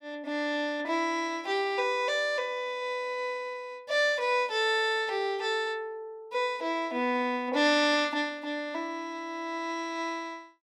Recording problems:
none

